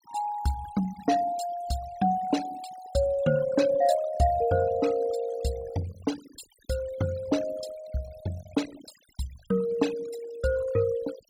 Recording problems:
noise reduction artefacts; signal-to-artefact ratio 16 dB

